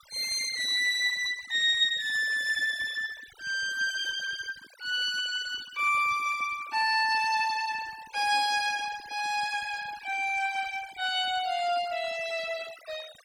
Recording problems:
denoising artefacts; signal-to-artefact ratio 20 dB

